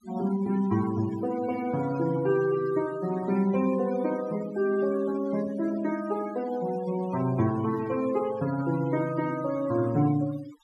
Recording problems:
noise reduction artefacts; signal-to-artefact ratio 16 dB

